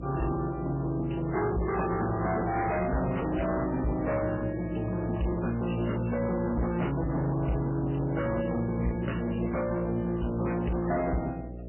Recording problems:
lossy compression; MP3, then MP3, log-spectral distance 4 dB, nothing above 3 kHz
distorted audio; hard clipping, uneven, signal-to-distortion ratio 6 dB
hum; 60 Hz, harmonics up to 660 Hz, SNR 11 dB

